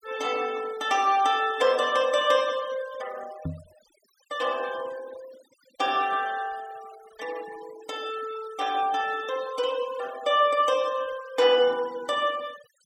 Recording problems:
denoising artefacts; signal-to-artefact ratio 19 dB
knock on the microphone; at 3.5 s; peak -3 dB vs average level

